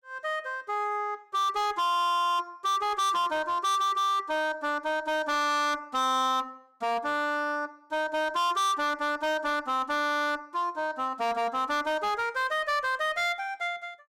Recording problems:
distorted audio; hard clipping, signal-to-distortion ratio 7 dB

